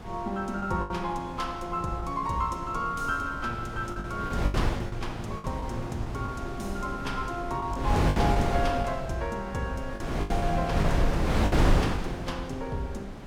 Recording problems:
wind on the microphone; below 400 Hz, SNR -1 dB
lost packets; 7% of the sound replaced, filled with the last packet

